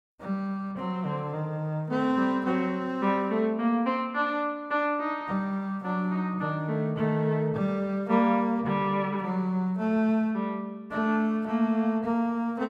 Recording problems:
none

